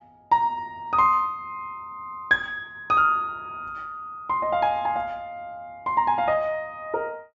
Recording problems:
treble missing; nothing above 8 kHz

